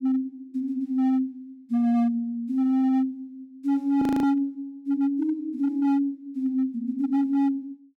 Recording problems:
distortion; hard clipping, signal-to-distortion ratio 11 dB
frozen audio; at 4 s

